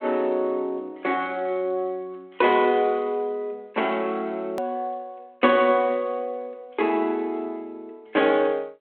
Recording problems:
phone line; 240 Hz to 3.4 kHz, G.726
edit click; at 4.5 s

